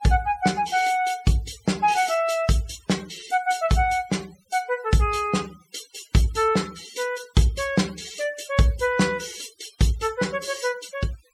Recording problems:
denoising artefacts; signal-to-artefact ratio 19 dB

